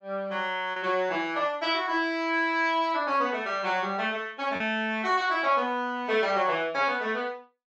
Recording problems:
low-pass filter; nothing above 8 kHz
packet loss; 1.1% of the sound replaced, filled with repeated pitch periods

